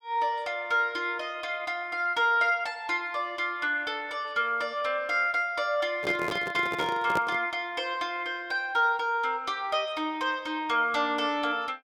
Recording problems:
microphone handling noise; from 6 to 7.5 s; peak 0 dB vs average level

